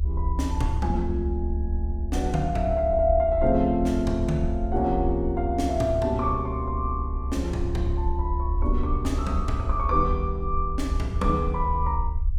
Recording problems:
low-frequency rumble; below 70 Hz, SNR 3 dB

